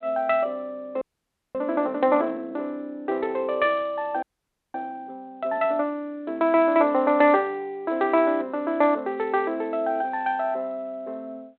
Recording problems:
telephone audio; 300 Hz to 3.3 kHz, G.726
frozen audio; at 1 s for 0.5 s and at 4 s for 0.5 s

